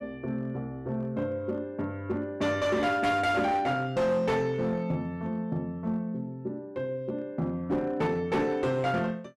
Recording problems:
distortion; hard clipping, uneven, signal-to-distortion ratio 10 dB

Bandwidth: 12.5 kHz